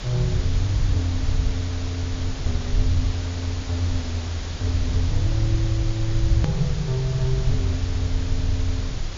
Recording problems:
treble missing; nothing above 7.2 kHz
background hiss; slope -2 dB per octave, SNR 10 dB
low-frequency rumble; below 82 Hz, SNR 2 dB
click at an edit; at 6.5 s

